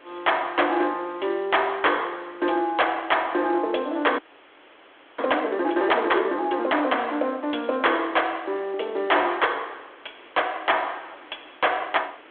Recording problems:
telephone audio; 260 Hz to 3.5 kHz, G.726
distorted audio; hard clipping, uneven, signal-to-distortion ratio 8 dB
background hiss; SNR 25 dB
audio freezing; at 4 s for 1 s

